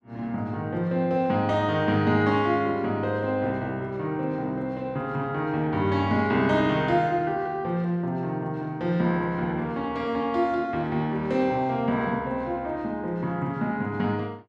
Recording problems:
none

